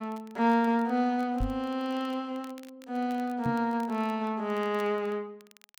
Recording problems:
crackling; vinyl, SNR 27 dB
microphone bump; at 1.5 s and at 3.5 s; peak 0 dB vs average level

